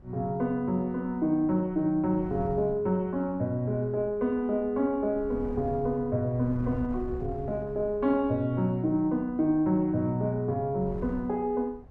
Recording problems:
wind on the microphone; below 150 Hz, SNR 17 dB

